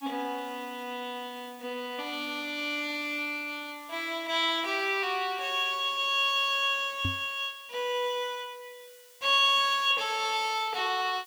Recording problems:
hiss; slope +4 dB per octave, SNR 25 dB
microphone thump; at 7 s; peak 0 dB vs average level

